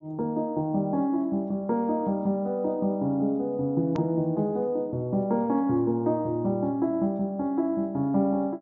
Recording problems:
low-pass filter; nothing above 6.9 kHz
hard cut with a click; at 4 s

